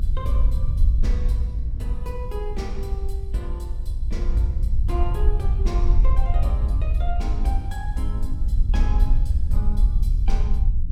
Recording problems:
rumble; below 58 Hz, SNR -9 dB
wind noise; below 150 Hz, SNR 10 dB

